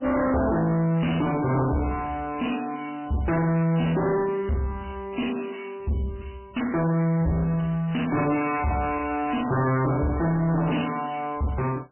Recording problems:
lossy codec; MP3, log-spectral distance 7 dB, nothing above 2.8 kHz
distortion; soft clipping, signal-to-distortion ratio 6 dB

